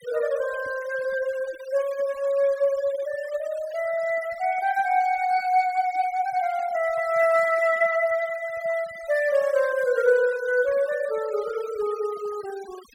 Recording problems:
denoising artefacts; signal-to-artefact ratio 20 dB

